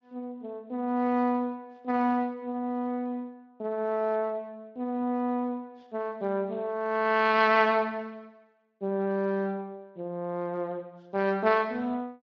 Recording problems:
codec artefacts; Speex, log-spectral distance 2 dB

